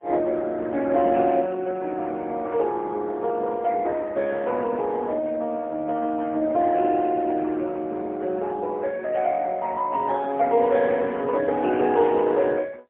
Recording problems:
phone line; 280 Hz to 3.3 kHz, AMR-NB, then MP3

